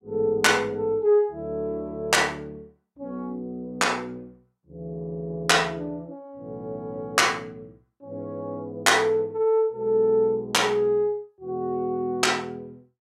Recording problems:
none

